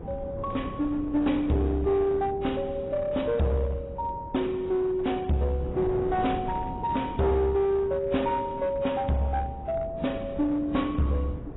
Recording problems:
lossy codec; AAC, log-spectral distance 2 dB, nothing above 3.8 kHz
distorted audio; hard clipping, uneven, signal-to-distortion ratio 10 dB
wind noise; below 350 Hz, SNR 13 dB

